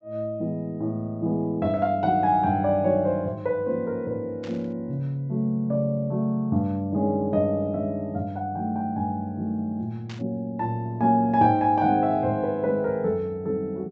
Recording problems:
low-pass filter; nothing above 8 kHz
burst of static; at 4.5 s and at 10 s; peak -13 dB vs average level

